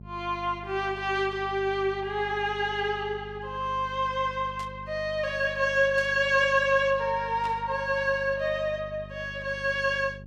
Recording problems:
hum; 50 Hz, harmonics up to 600 Hz, SNR 17 dB
static burst; at 4.5 s, at 6 s and at 7.5 s; peak -13 dB vs average level

